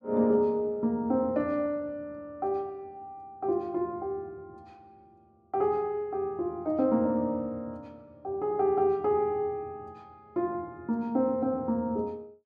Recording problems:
none

